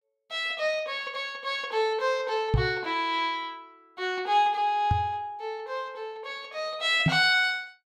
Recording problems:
knock on the microphone; at 2.5 s, at 5 s and at 7 s; peak +7 dB vs average level

